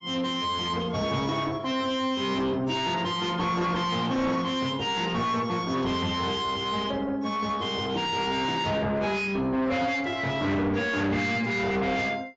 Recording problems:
lossy compression; AAC, log-spectral distance 3 dB, nothing above 7.3 kHz
distorted audio; soft clipping, signal-to-distortion ratio 7 dB

